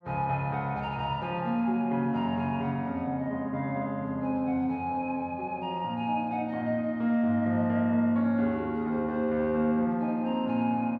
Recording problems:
none

